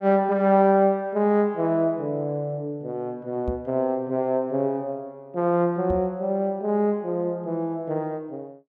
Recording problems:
microphone bump; at 3.5 s and at 6 s; peak -3 dB vs average level

